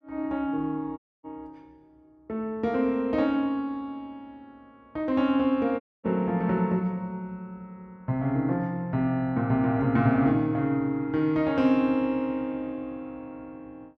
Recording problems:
dropout; at 1 s and at 6 s

